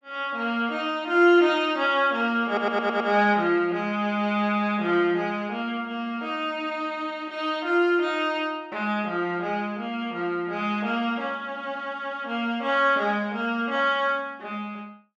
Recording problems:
audio stuttering; at 2.5 s

